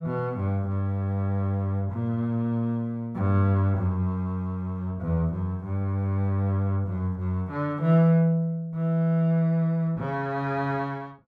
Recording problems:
none

